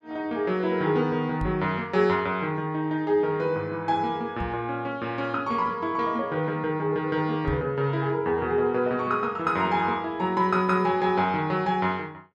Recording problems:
microphone thump; at 1.5 s, at 4.5 s and at 7.5 s; peak -2 dB vs average level

